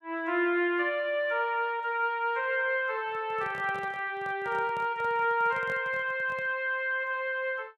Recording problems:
handling noise; from 3 to 6.5 s; peak -10 dB vs average level

